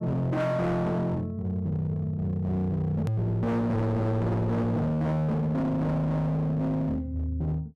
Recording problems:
distortion; hard clipping, signal-to-distortion ratio 6 dB
edit click; at 3 s

